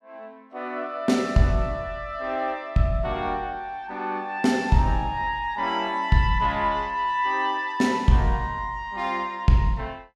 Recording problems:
none

